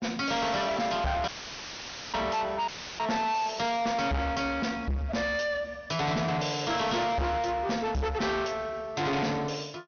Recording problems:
treble cut off; nothing above 6.3 kHz
distorted audio; soft clipping, signal-to-distortion ratio 6 dB
dropout; at 1.5 s for 1 s and at 2.5 s; filled with static

